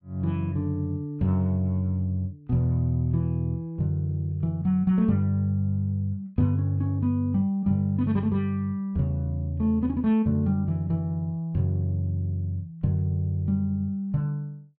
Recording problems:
none

